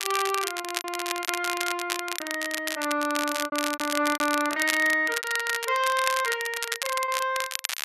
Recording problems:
crackle; vinyl, SNR 5 dB
lost packets; 11% of the sound replaced, filled with repeated pitch periods

